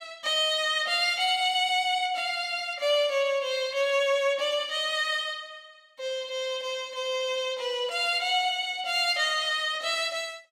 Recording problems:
none

